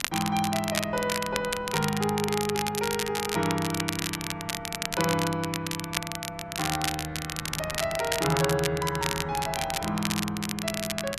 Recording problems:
wind on the microphone; below 350 Hz, SNR 18 dB
crackle; vinyl, SNR 3 dB

